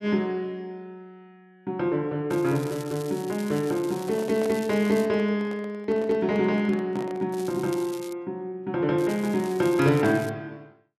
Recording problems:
crackling; from 2.5 to 5 s, at 7.5 s and from 9 to 10 s; loose cable, SNR 19 dB
handling noise; from 4 to 7.5 s; peak -8 dB vs average level

